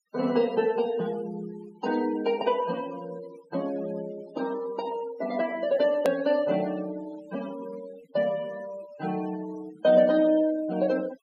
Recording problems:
noise reduction artefacts; signal-to-artefact ratio 18 dB
hard cut with a click; at 6 s

